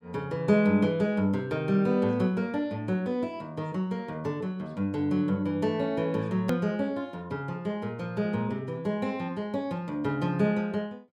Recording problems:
hard cut with a click; at 6.5 s

